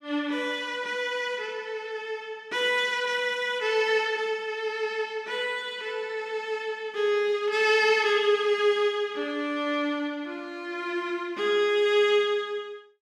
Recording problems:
none

